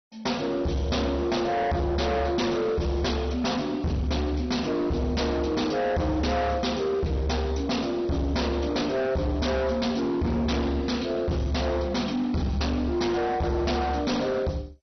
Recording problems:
codec artefacts; MP2, log-spectral distance 4 dB, nothing above 6 kHz
distortion; hard clipping, signal-to-distortion ratio 6 dB

